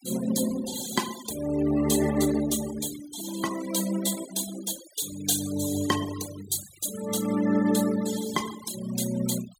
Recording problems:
denoising artefacts; signal-to-artefact ratio 12 dB

